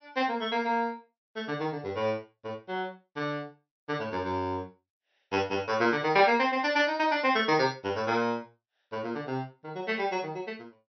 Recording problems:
treble cut off; nothing above 5.9 kHz

